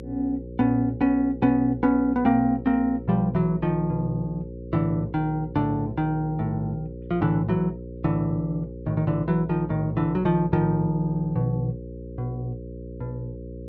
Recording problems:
electrical hum; 60 Hz, harmonics up to 540 Hz, SNR 13 dB

